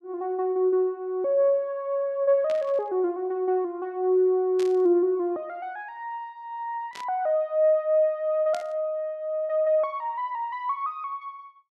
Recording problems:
burst of static; 4 times, first at 2.5 s; peak -11 dB vs average level

